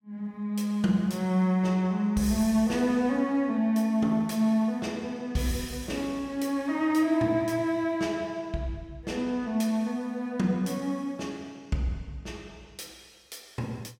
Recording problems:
none

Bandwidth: 16.5 kHz